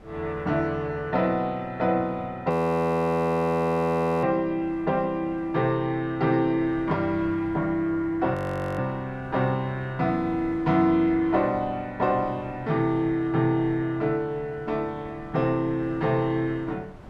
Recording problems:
wind noise; below 510 Hz, SNR 22 dB
frozen audio; at 2.5 s for 1.5 s and at 8.5 s

